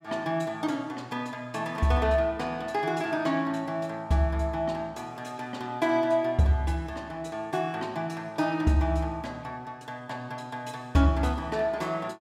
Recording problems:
none

